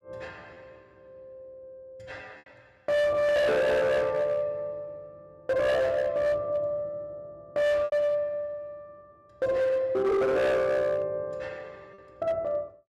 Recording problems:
distorted audio; hard clipping, signal-to-distortion ratio 7 dB
lost packets; 0.9% of the sound replaced, filled with repeated pitch periods

